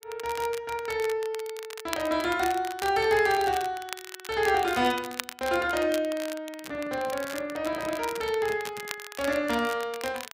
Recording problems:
crackling; vinyl, SNR 12 dB
handling noise; from 6.5 to 9 s; peak -13 dB vs average level

